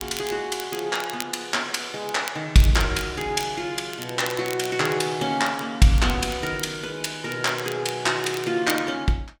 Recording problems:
crackle; vinyl, SNR 15 dB

